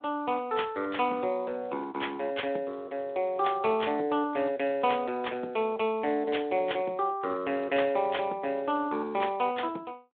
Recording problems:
phone line; 220 Hz to 3.6 kHz, Speex

